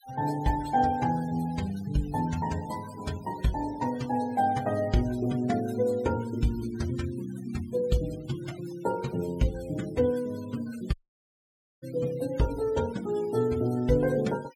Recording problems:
noise reduction artefacts; signal-to-artefact ratio 19 dB
dropout; at 11 s for 1 s

